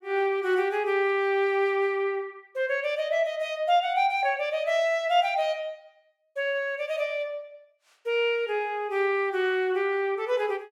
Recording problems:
none

